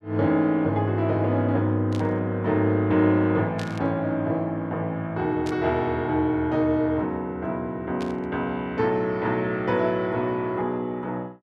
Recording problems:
static burst; 4 times, first at 2 s; peak -10 dB vs average level

